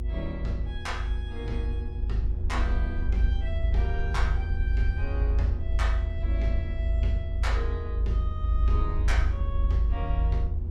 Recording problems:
mains hum; 60 Hz, harmonics up to 960 Hz, SNR 11 dB
rumble; below 78 Hz, strongest tone 52 Hz, SNR -8 dB
wind noise; below 86 Hz, SNR 8 dB

